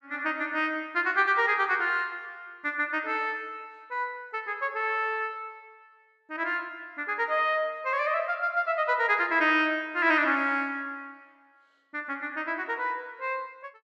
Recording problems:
none

